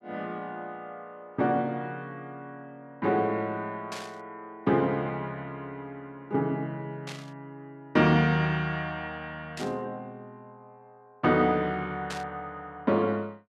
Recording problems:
burst of static; 4 times, first at 4 s; peak -5 dB vs average level

